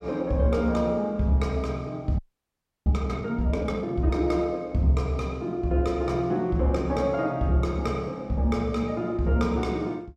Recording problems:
frozen audio; at 2 s for 0.5 s

